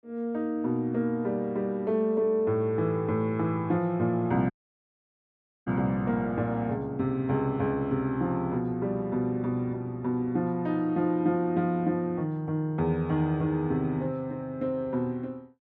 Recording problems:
audio cutting out; at 4.5 s for 1 s

